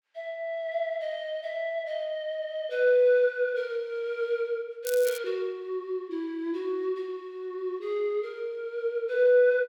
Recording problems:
crackling; at 5 s; loose cable, SNR 11 dB

